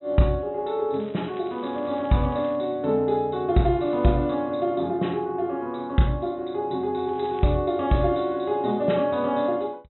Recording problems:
treble missing; nothing above 3.9 kHz
crackle; from 1 to 2.5 s and at 7 s; loose cable, SNR 27 dB

